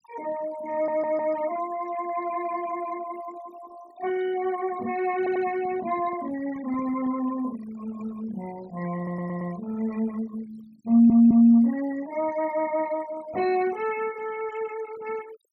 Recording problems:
noise reduction artefacts; signal-to-artefact ratio 19 dB
stutter; 4 times, first at 0.5 s
handling noise; from 5 to 7 s; peak -14 dB vs average level

